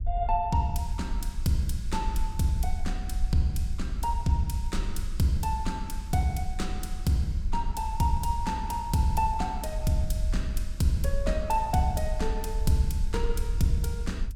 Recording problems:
low-frequency rumble; below 54 Hz, SNR 5 dB

